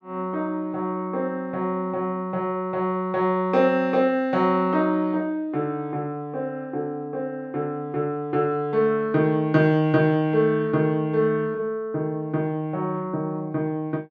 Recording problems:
none

